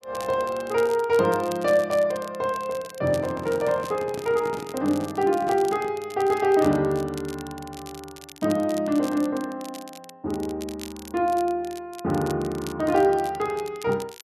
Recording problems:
crackle; vinyl, SNR 19 dB
handling noise; from 3 to 6 s; peak -7 dB vs average level

